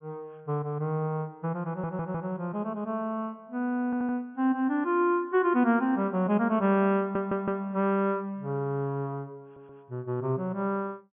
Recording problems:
treble cut off; nothing above 3.4 kHz
stutter; 4 times, first at 1.5 s

